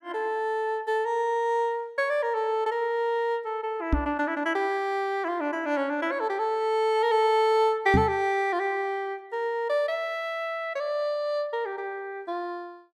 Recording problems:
microphone thump; at 4 s and at 8 s; peak +7 dB vs average level

